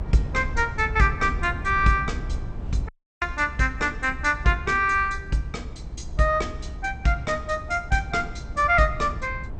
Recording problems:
lossy compression; MP2, log-spectral distance 2 dB, nothing above 8.5 kHz
low-frequency rumble; below 100 Hz, SNR 11 dB
audio cutting out; at 3 s

